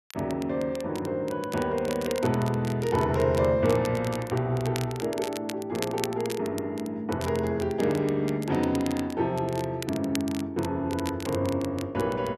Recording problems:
crackling; vinyl, SNR 14 dB

